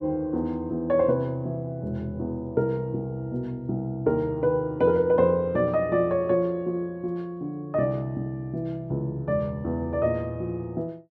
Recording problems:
none

